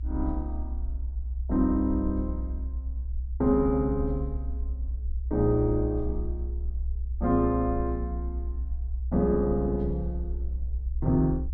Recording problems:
rumble; below 64 Hz, strongest tone 62 Hz, SNR 5 dB

